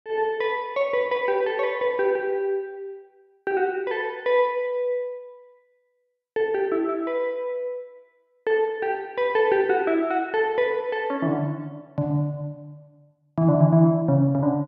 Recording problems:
none

